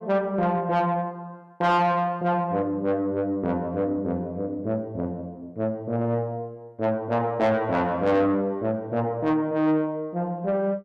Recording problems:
distorted audio; soft clipping, signal-to-distortion ratio 11 dB

